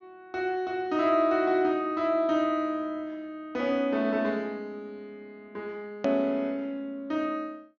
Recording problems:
low-pass filter; nothing above 6.6 kHz
edit click; at 6 s

